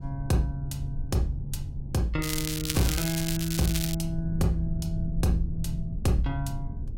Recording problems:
low-frequency rumble; below 100 Hz, SNR 7 dB
crackling; from 2 to 4 s; loose cable, SNR 2 dB

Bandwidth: 16.5 kHz